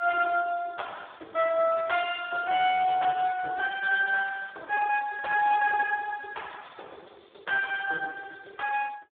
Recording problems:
telephone audio; 320 Hz to 3.5 kHz, Speex

